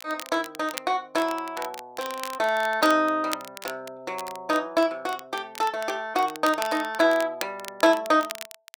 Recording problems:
crackling; vinyl, SNR 14 dB

